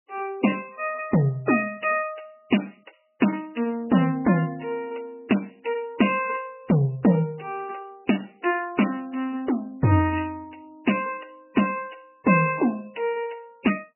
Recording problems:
lossy codec; MP3, log-spectral distance 6 dB, nothing above 2.8 kHz

